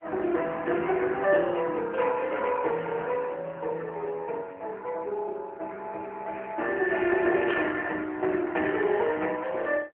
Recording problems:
telephone audio; 240 Hz to 3.2 kHz, AMR-NB
burst of static; at 7.5 s; peak -1 dB vs average level

